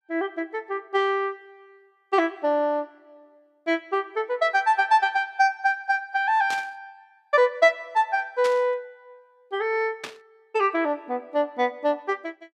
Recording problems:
burst of static; at 6.5 s, at 8.5 s and at 10 s; peak -5 dB vs average level

